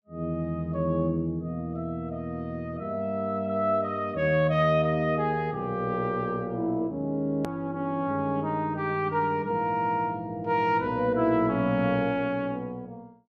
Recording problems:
click at an edit; at 7.5 s

